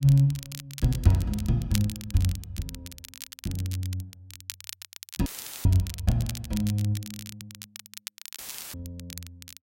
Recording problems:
crackling; vinyl, SNR 14 dB
audio cutting out; at 5.5 s and at 8.5 s; filled with static
audio stuttering; at 7 s

